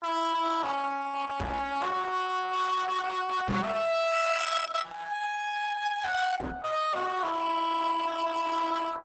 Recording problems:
codec artefacts; Opus, log-spectral distance 4 dB, nothing above 8 kHz
distortion; hard clipping, signal-to-distortion ratio 6 dB
microphone bump; at 1.5 s, at 3.5 s and at 6.5 s; peak +5 dB vs average level

